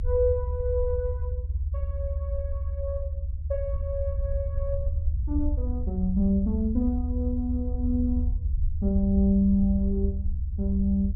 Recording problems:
low-frequency rumble; below 76 Hz, SNR 1 dB

